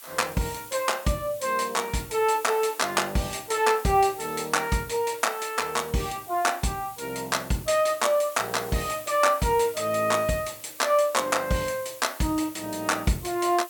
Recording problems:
hiss; slope +2 dB per octave, SNR 16 dB

